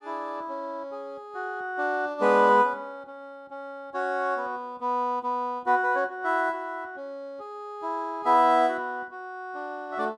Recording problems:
none

